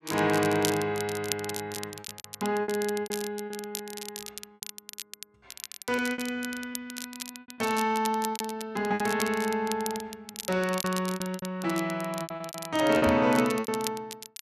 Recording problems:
crackle; vinyl, SNR 10 dB
packet loss; 11% of the sound replaced, filled with repeated pitch periods
microphone thump; at 13 s; peak 0 dB vs average level

